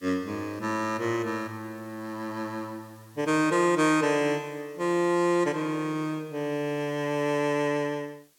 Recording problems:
background hiss; slope 0 dB per octave, SNR 30 dB

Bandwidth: 17 kHz